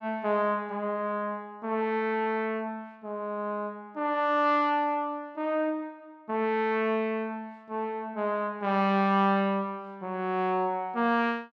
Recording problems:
none

